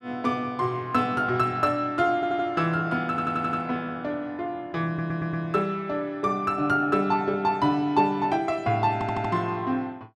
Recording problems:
audio stuttering; 4 times, first at 2 s

